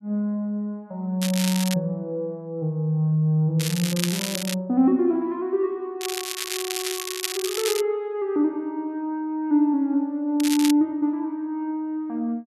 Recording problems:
crackle; 4 times, first at 1 s; loose cable, SNR 5 dB

